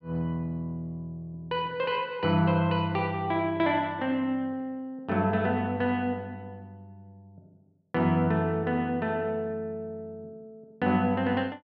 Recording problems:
none

